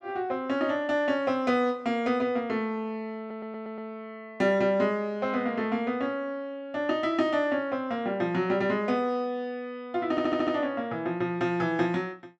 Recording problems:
stutter; at 3 s and at 10 s

